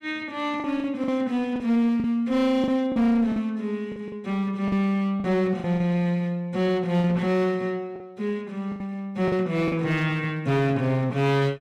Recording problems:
distortion; hard clipping, uneven, signal-to-distortion ratio 10 dB
packet loss; 7% of the sound replaced, filled with the last packet

